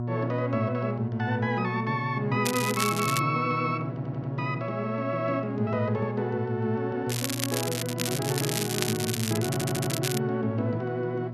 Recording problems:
electrical hum; 60 Hz, harmonics up to 1.1 kHz, SNR 6 dB
crackling; at 2.5 s and from 7 to 10 s; loose cable, SNR 3 dB
audio stuttering; at 4 s and at 9.5 s

